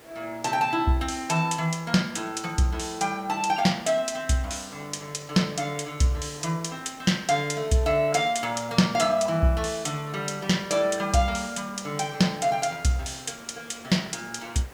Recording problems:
background hiss; slope -5 dB per octave, SNR 22 dB

